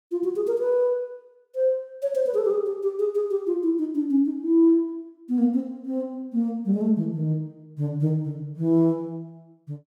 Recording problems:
none

